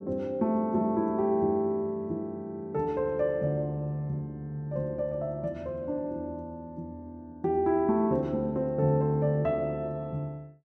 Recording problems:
none

